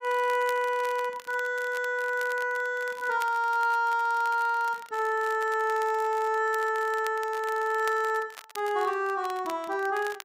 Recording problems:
crackling; vinyl, SNR 20 dB

